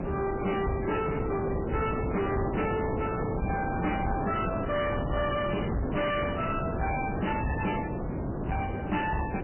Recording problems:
lossy compression; MP3, log-spectral distance 6 dB, nothing above 2.7 kHz
distorted audio; soft clipping, signal-to-distortion ratio 7 dB
wind on the microphone; below 570 Hz, SNR 2 dB

